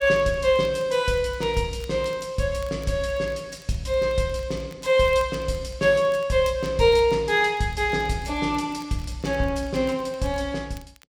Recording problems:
crackle; vinyl, SNR 28 dB

